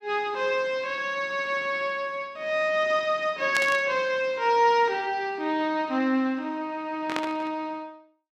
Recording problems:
burst of static; at 3.5 s and at 7 s; peak +1 dB vs average level

